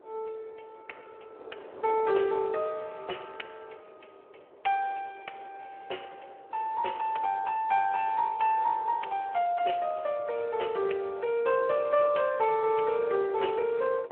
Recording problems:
telephone audio; 320 Hz to 3.1 kHz, Speex
wind on the microphone; below 700 Hz, SNR 20 dB

